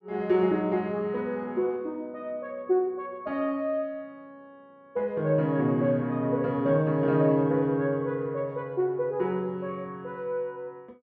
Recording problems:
none

